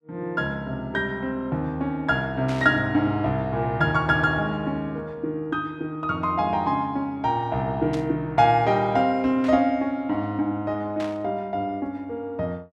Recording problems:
burst of static; 4 times, first at 2.5 s; peak -10 dB vs average level

